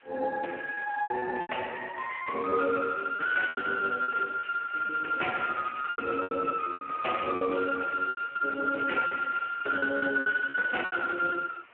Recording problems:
telephone audio; 320 Hz to 2.8 kHz, Speex
background hiss; SNR 26 dB
packet loss; 11% of the sound replaced, filled with repeated pitch periods

